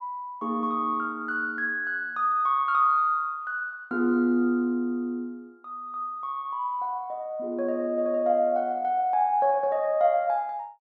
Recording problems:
none

